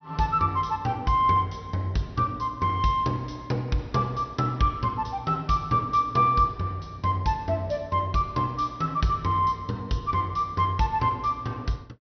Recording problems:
low-pass filter; nothing above 6 kHz

